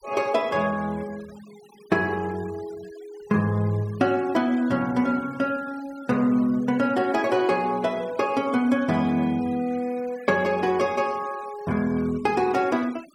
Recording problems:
noise reduction artefacts; signal-to-artefact ratio 23 dB

